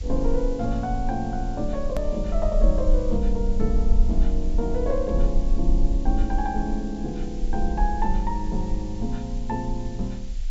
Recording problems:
treble missing; nothing above 8 kHz
background hiss; SNR 21 dB
rumble; below 44 Hz, SNR 0 dB
edit click; at 2 s

